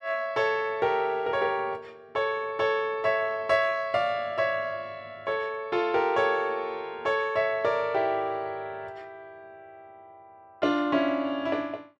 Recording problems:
none

